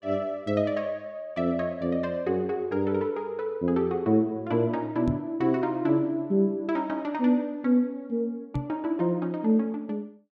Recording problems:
microphone thump; at 5 s and at 8.5 s; peak 0 dB vs average level

